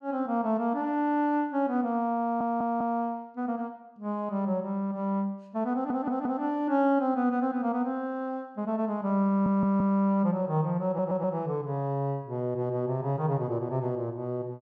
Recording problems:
audio stuttering; 4 times, first at 2 s

